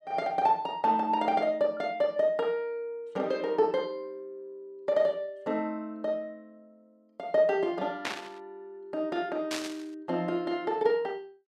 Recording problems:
burst of static; at 8 s and at 9.5 s; peak +1 dB vs average level

